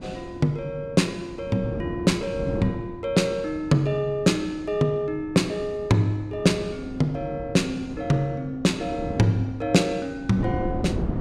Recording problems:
wind noise; below 320 Hz, SNR 11 dB

